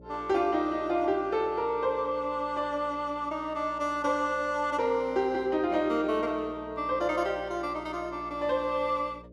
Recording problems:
electrical hum; 60 Hz, harmonics up to 600 Hz, SNR 22 dB

